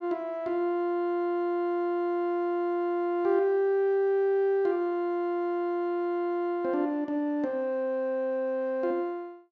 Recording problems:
none

